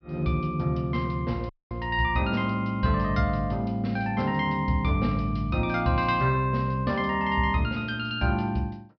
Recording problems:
treble missing; nothing above 5.5 kHz
audio cutting out; at 1.5 s

